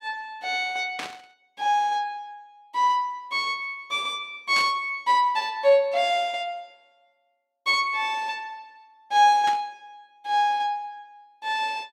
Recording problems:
burst of static; at 1 s, at 4.5 s and at 9.5 s; peak -4 dB vs average level

